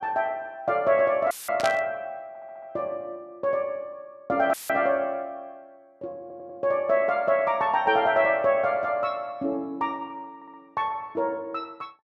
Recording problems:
audio cutting out; at 1.5 s and at 4.5 s; filled with static
static burst; at 1.5 s; peak -1 dB vs average level
stutter; at 2.5 s, at 6 s and at 10 s

